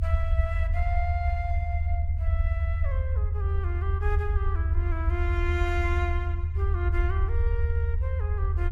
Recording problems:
rumble; below 80 Hz, SNR -8 dB

